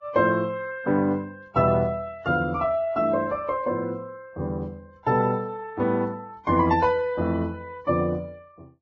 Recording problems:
lossy compression; Vorbis, log-spectral distance 2 dB

